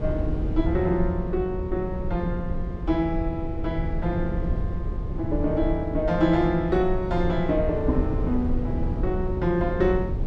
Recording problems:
rumble; below 120 Hz, SNR 4 dB

